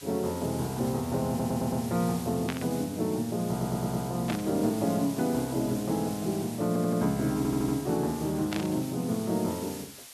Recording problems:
hiss; slope +2 dB per octave, SNR 14 dB
audio stuttering; 4 times, first at 1.5 s
static burst; at 2.5 s, at 4.5 s and at 8.5 s; peak -2 dB vs average level

